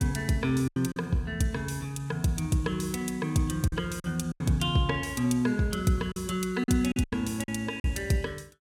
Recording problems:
packet loss; 7% of the sound replaced, filled with silence

